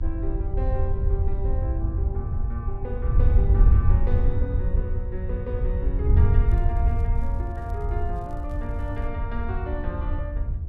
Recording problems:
hum; 60 Hz, harmonics up to 1.7 kHz, SNR 26 dB
wind on the microphone; below 86 Hz, SNR -9 dB
crackle; from 6.5 to 9 s; loose cable, SNR 29 dB

